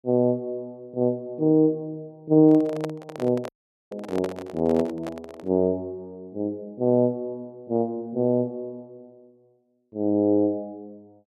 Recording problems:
handling noise; from 2.5 to 5.5 s; peak -4 dB vs average level
audio cutting out; at 3.5 s

